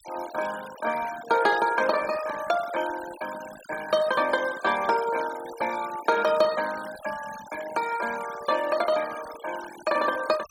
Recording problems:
denoising artefacts; signal-to-artefact ratio 14 dB

